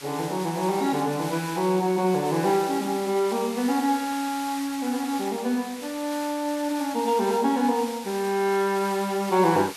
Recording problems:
background hiss; SNR 13 dB

